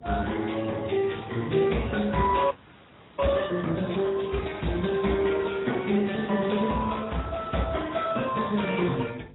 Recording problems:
lossy compression; Speex, then AAC, log-spectral distance 6 dB, nothing above 3.8 kHz
hum; 50 Hz, harmonics up to 500 Hz, SNR 23 dB
frozen audio; at 2.5 s for 0.5 s

